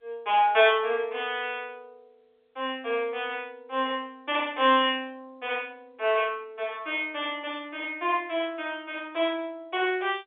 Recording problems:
phone line; 300 Hz to 3.7 kHz, G.711

